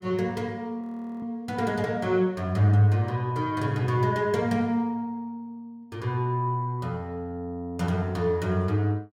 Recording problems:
audio freezing; at 1 s

